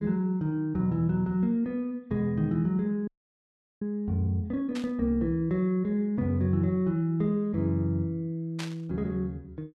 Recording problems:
frozen audio; at 3 s for 0.5 s
static burst; at 5 s and at 8.5 s; peak -5 dB vs average level

